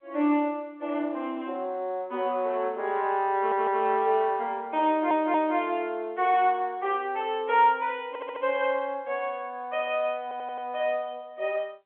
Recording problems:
phone line; 260 Hz to 3.5 kHz, G.711
audio stuttering; 4 times, first at 3.5 s

